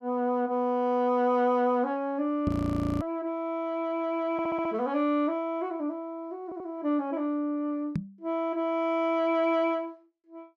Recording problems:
knock on the microphone; at 2.5 s and at 8 s; peak +3 dB vs average level
audio freezing; at 2.5 s for 0.5 s
audio stuttering; at 4.5 s and at 6.5 s

